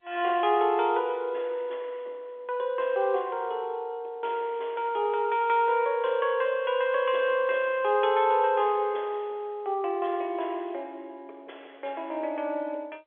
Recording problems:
phone line; 340 Hz to 3.5 kHz, G.711

